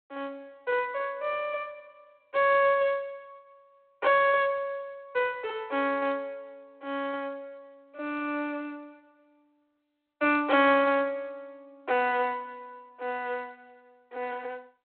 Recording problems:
phone line; 260 Hz to 3.3 kHz, G.726

